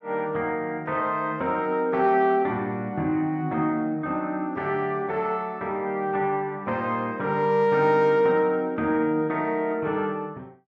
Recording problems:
none

